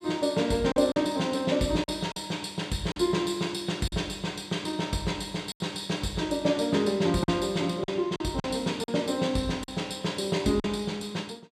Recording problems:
packet loss; 5% of the sound replaced, filled with silence

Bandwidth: 14.5 kHz